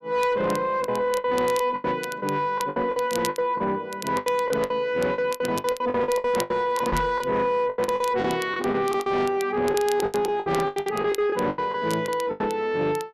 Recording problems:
distorted audio; soft clipping, signal-to-distortion ratio 11 dB
crackle; vinyl, SNR 16 dB
lost packets; 16% of the sound replaced, filled with the last packet
microphone thump; at 7 s; peak 0 dB vs average level

